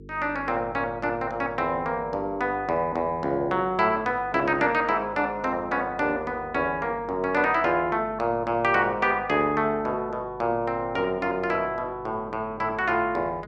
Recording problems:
hum; 50 Hz, harmonics up to 450 Hz, SNR 21 dB

